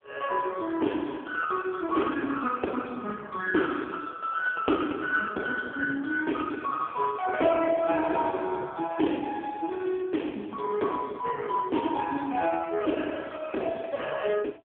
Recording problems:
telephone audio; 240 Hz to 2.5 kHz, AMR-NB

